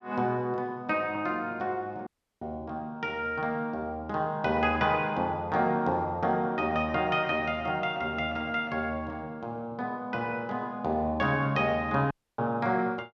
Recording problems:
audio cutting out; at 2 s and at 12 s

